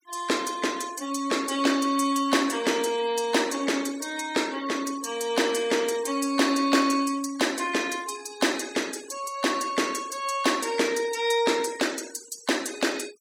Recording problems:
denoising artefacts; signal-to-artefact ratio 17 dB

